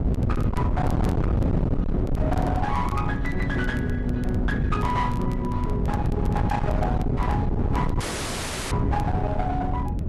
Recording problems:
codec artefacts; AAC, log-spectral distance 2 dB, nothing above 11.3 kHz
distortion; hard clipping, uneven, signal-to-distortion ratio 7 dB
wind on the microphone; below 230 Hz, SNR -2 dB
crackling; vinyl, SNR 24 dB
audio cutting out; at 8 s for 0.5 s

